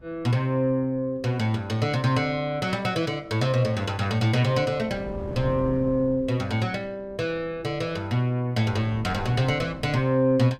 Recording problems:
wind on the microphone; below 250 Hz, SNR 16 dB

